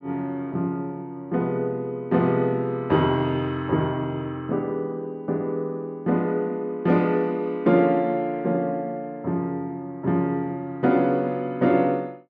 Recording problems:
none

